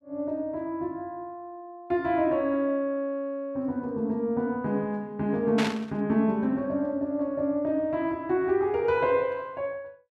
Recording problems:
static burst; at 5.5 s; peak +1 dB vs average level

